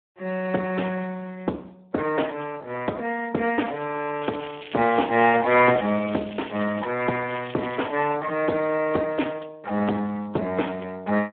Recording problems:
phone line; 280 Hz to 3.4 kHz, Speex
crackle; from 4 to 7 s and at 7.5 s; loose cable, SNR 15 dB

